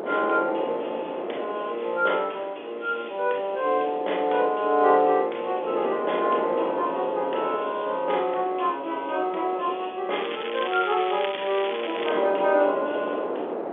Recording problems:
telephone audio; 300 Hz to 3.5 kHz, G.711
wind on the microphone; below 710 Hz, SNR 9 dB
crackle; from 10 to 12 s; loose cable, SNR 10 dB

